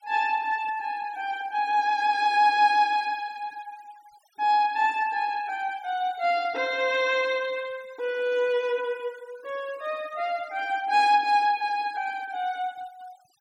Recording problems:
denoising artefacts; signal-to-artefact ratio 25 dB

